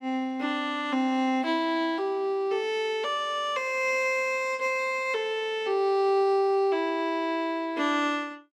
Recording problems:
none

